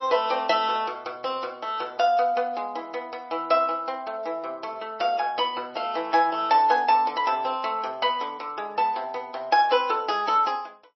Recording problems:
codec artefacts; MP3, log-spectral distance 2 dB, nothing above 5.5 kHz

